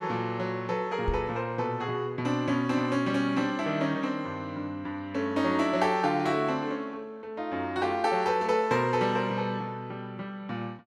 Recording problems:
knock on the microphone; at 1 s; peak +1 dB vs average level

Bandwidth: 13 kHz